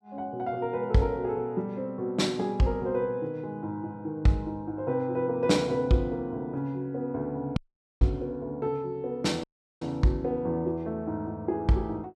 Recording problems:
dropout; at 7.5 s and at 9.5 s

